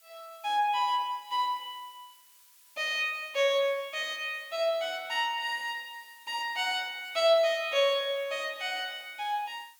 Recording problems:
hiss; slope +4 dB per octave, SNR 26 dB

